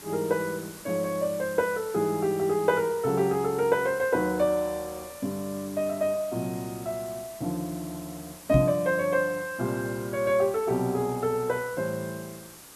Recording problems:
hiss; slope -2 dB per octave, SNR 17 dB
microphone bump; at 8.5 s; peak +7 dB vs average level

